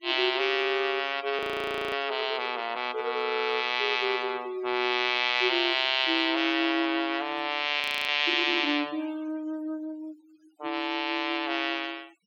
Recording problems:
noise reduction artefacts; signal-to-artefact ratio 23 dB
audio freezing; at 1.5 s for 0.5 s and at 8 s

